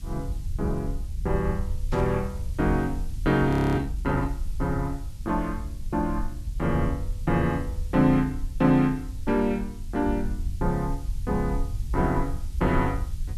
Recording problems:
background hiss; slope +4 dB per octave, SNR 26 dB
rumble; below 72 Hz, SNR 7 dB
burst of static; at 2 s; peak -13 dB vs average level
audio freezing; at 3.5 s

